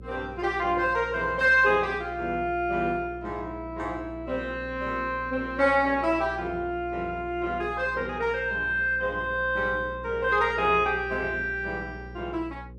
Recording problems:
hum; 60 Hz, harmonics up to 540 Hz, SNR 17 dB

